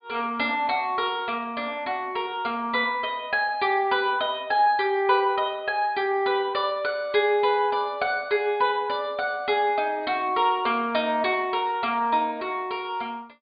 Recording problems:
low-pass filter; nothing above 4.8 kHz

